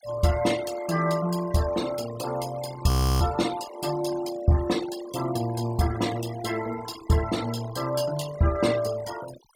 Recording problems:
noise reduction artefacts; signal-to-artefact ratio 14 dB
frozen audio; at 3 s

